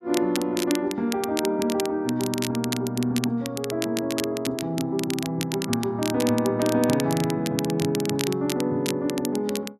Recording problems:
crackling; vinyl, SNR 8 dB

